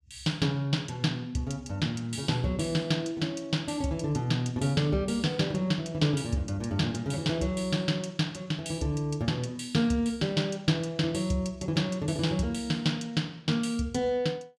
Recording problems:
none

